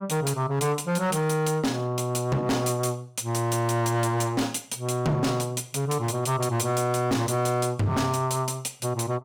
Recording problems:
distorted audio; hard clipping, signal-to-distortion ratio 8 dB

